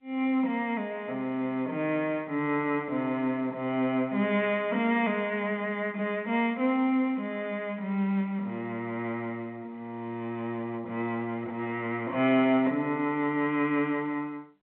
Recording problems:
telephone audio; 240 Hz to 3.5 kHz, G.711

